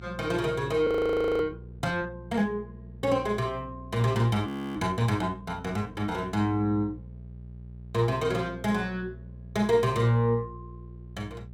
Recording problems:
hum; 60 Hz, harmonics up to 420 Hz, SNR 17 dB
audio freezing; at 1 s for 0.5 s and at 4.5 s

